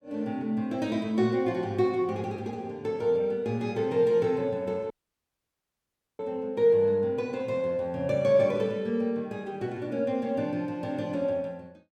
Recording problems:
audio cutting out; at 5 s for 1.5 s

